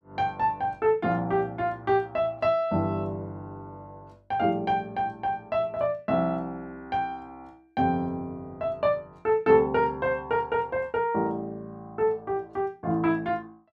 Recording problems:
none

